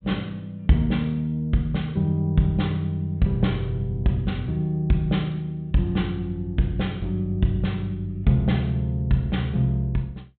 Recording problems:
low-pass filter; nothing above 4 kHz

